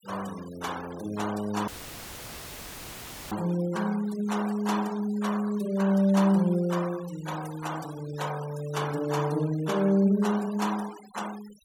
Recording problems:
noise reduction artefacts; signal-to-artefact ratio 18 dB
dropout; at 1.5 s for 1.5 s; filled with static

